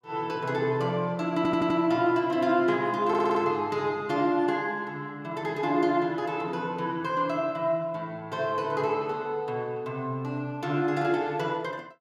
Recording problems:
stutter; at 1.5 s and at 3 s

